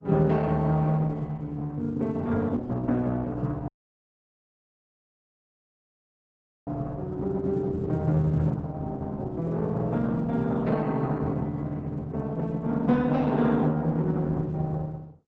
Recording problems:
lossy compression; Opus, log-spectral distance 2 dB, nothing above 7.3 kHz
audio cutting out; at 3.5 s for 3 s

